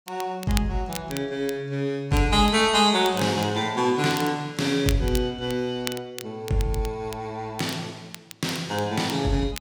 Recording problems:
crackling; vinyl, SNR 15 dB

